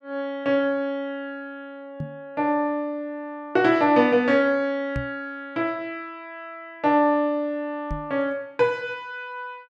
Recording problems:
microphone thump; at 2 s, at 5 s and at 8 s; peak -2 dB vs average level

